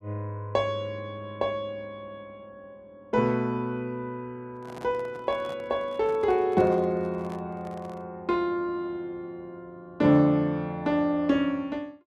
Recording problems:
microphone handling noise; from 4.5 to 8 s; peak -11 dB vs average level

